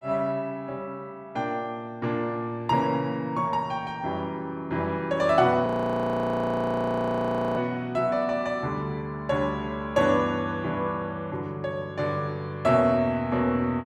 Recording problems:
frozen audio; at 5.5 s for 2 s

